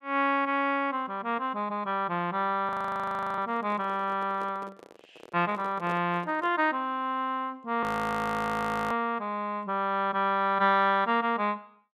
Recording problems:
handling noise; from 2.5 to 7 s; peak -9 dB vs average level
frozen audio; at 2.5 s for 0.5 s and at 8 s for 1 s

